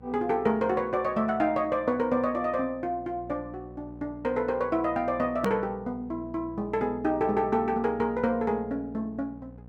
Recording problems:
hum; 60 Hz, harmonics up to 1 kHz, SNR 19 dB
edit click; at 5.5 s

